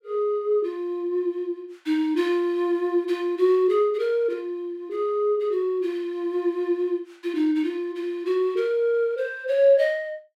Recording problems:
none

